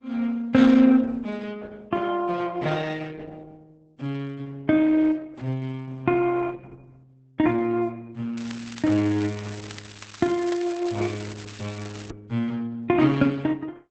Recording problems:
lossy compression; Opus, log-spectral distance 5 dB, nothing above 8 kHz
crackling; from 8.5 to 12 s; loose cable, SNR 18 dB

